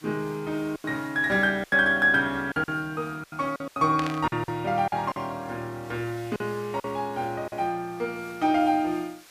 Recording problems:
background hiss; slope 0 dB per octave, SNR 25 dB
lost packets; 8% of the sound replaced, filled with silence
static burst; at 4 s; peak -3 dB vs average level

